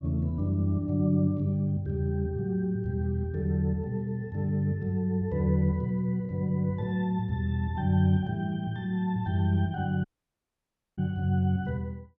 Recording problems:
dropout; at 10 s for 1 s

